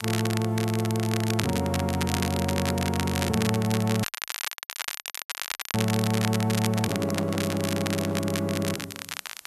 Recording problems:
hiss; slope -1 dB per octave, SNR 27 dB
crackle; vinyl, SNR 6 dB
dropout; at 4 s for 1.5 s
handling noise; from 6.5 to 8 s; peak -6 dB vs average level

